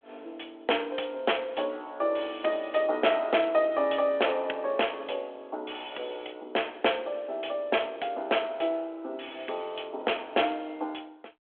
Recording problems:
phone line; 280 Hz to 3.4 kHz, G.726

